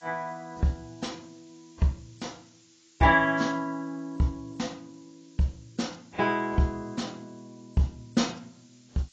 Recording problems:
codec artefacts; AAC, log-spectral distance 13 dB
hiss; slope +5 dB per octave, SNR 30 dB

